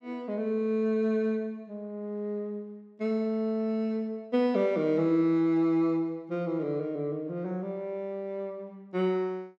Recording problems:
none

